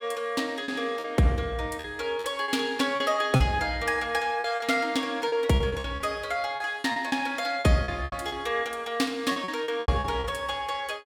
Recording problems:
lost packets; 11% of the sound replaced, filled with repeated pitch periods

